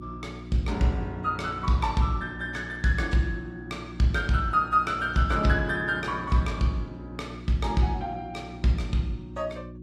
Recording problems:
lossy compression; AAC, log-spectral distance 2 dB
hum; 60 Hz, harmonics up to 360 Hz, SNR 13 dB

